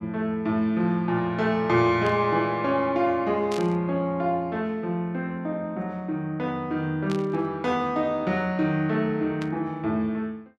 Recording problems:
burst of static; 4 times, first at 2 s; peak -8 dB vs average level

